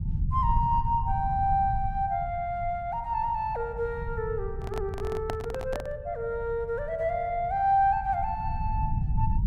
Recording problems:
low-frequency rumble; below 110 Hz, SNR 6 dB
handling noise; from 4.5 to 6 s; peak -1 dB vs average level

